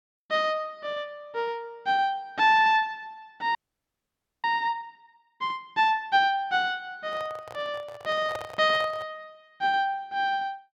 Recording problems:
frozen audio; at 3.5 s for 1 s
handling noise; from 7 to 9 s; peak -5 dB vs average level

